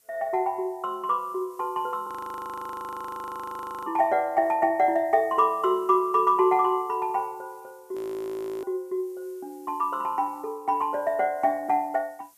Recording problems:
hiss; SNR 30 dB
audio freezing; at 2 s for 2 s and at 8 s for 0.5 s

